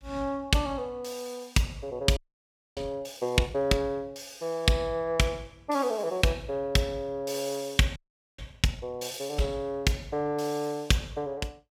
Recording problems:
audio freezing; at 2 s for 0.5 s and at 8 s

